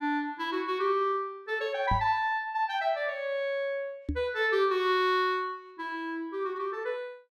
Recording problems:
knock on the microphone; at 2 s and at 4 s; peak +1 dB vs average level

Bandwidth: 14.5 kHz